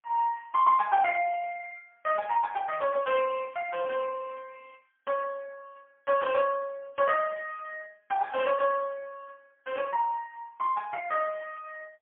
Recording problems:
phone line; 170 Hz to 2.3 kHz, AMR-NB, then MP3

